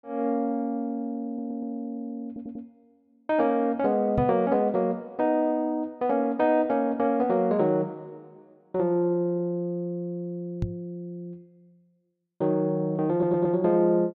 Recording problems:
stutter; at 1.5 s, at 2.5 s and at 13 s
microphone bump; at 4 s and at 11 s; peak +3 dB vs average level

